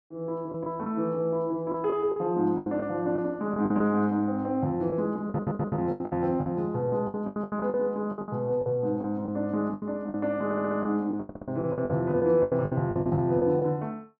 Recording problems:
packet loss; 13% of the sound replaced, filled with the last packet
stutter; at 5.5 s, at 10 s and at 11 s

